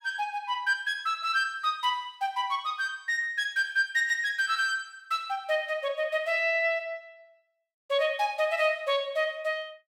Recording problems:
none

